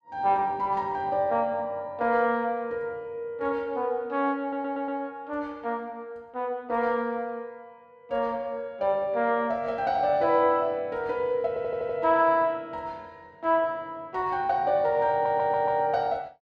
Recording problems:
stutter; at 4.5 s, at 11 s and at 15 s

